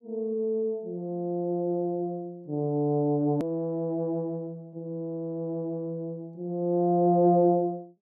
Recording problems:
click at an edit; at 3.5 s

